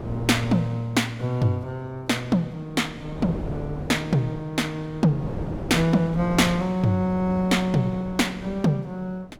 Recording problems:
wind noise; below 400 Hz, SNR 12 dB

